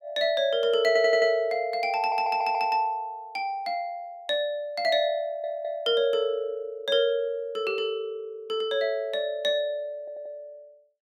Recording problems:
stutter; 4 times, first at 1 s

